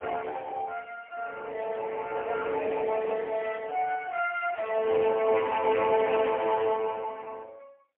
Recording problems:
telephone audio; 300 Hz to 3.1 kHz, AMR-NB, then MP3

